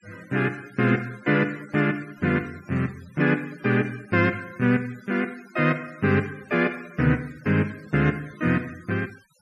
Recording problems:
denoising artefacts; signal-to-artefact ratio 24 dB

